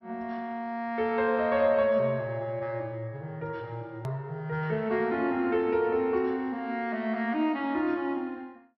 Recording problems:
low-pass filter; nothing above 5.7 kHz
click at an edit; at 4 s

